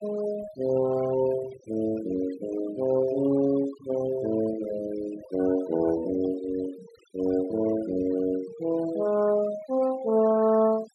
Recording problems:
noise reduction artefacts; signal-to-artefact ratio 17 dB

